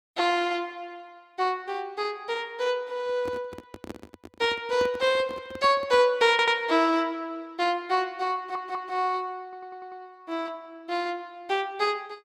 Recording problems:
microphone handling noise; from 3 to 6 s; peak -7 dB vs average level
audio stuttering; at 6.5 s, at 8.5 s and at 9.5 s

